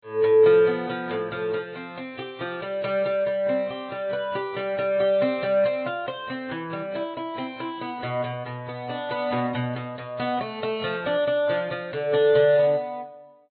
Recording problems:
low-pass filter; nothing above 4 kHz
codec artefacts; AAC, then AAC, log-spectral distance 2 dB

